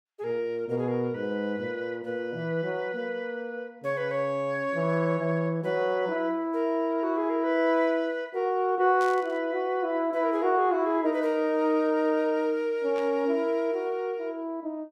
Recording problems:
static burst; at 9 s and at 13 s; peak -11 dB vs average level

